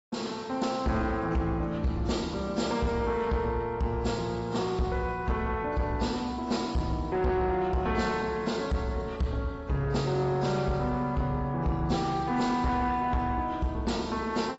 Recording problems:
lossy compression; AAC, log-spectral distance 3 dB, nothing above 7.6 kHz
distorted audio; soft clipping, signal-to-distortion ratio 11 dB

